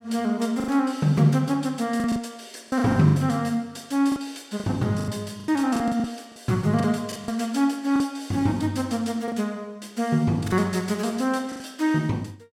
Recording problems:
packet loss; 9% of the sound replaced, filled with the last packet

